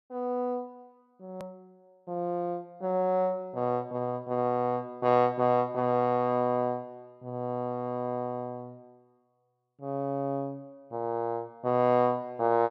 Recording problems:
click at an edit; at 1.5 s

